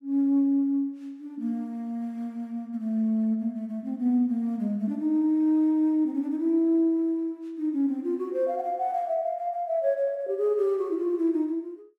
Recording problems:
none

